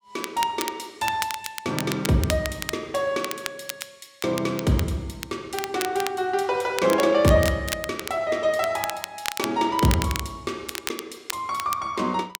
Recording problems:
crackling; vinyl, SNR 9 dB

